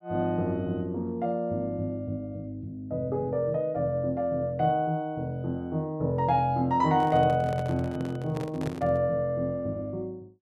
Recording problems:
microphone handling noise; from 7 to 9 s; peak -2 dB vs average level

